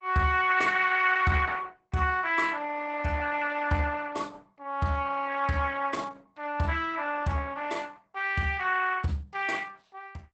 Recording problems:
lossy codec; Opus, log-spectral distance 4 dB, nothing above 8 kHz

